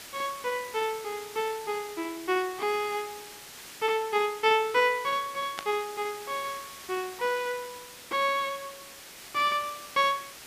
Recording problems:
background hiss; slope 0 dB per octave, SNR 14 dB
static burst; at 5.5 s; peak -2 dB vs average level

